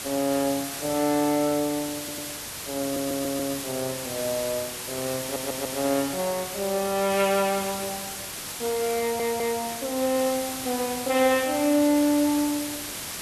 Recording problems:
background hiss; slope -1 dB per octave, SNR 6 dB
stutter; 4 times, first at 2 s

